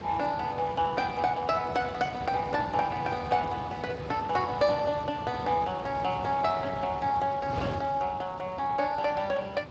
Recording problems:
lossy compression; Speex, log-spectral distance 3 dB
wind noise; below 740 Hz, SNR 11 dB

